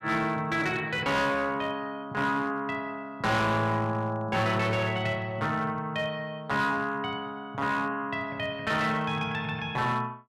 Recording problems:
distorted audio; hard clipping, signal-to-distortion ratio 10 dB

